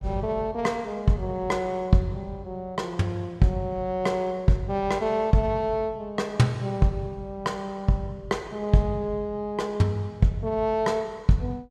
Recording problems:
none

